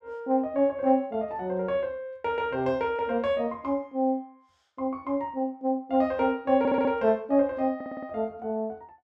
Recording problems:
audio stuttering; at 6.5 s and at 8 s

